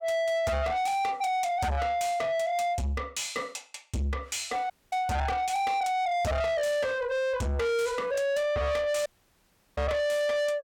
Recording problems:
distorted audio; soft clipping, signal-to-distortion ratio 7 dB
dropout; at 4.5 s and at 9 s for 0.5 s

